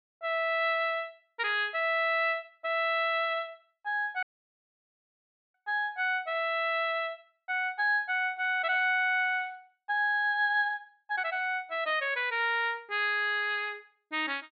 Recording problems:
treble missing; nothing above 4.4 kHz
audio cutting out; at 4 s for 1.5 s

